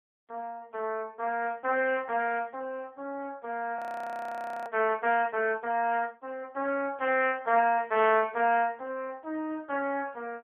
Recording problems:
phone line; 280 Hz to 3.3 kHz, AMR-NB
audio freezing; at 4 s for 1 s

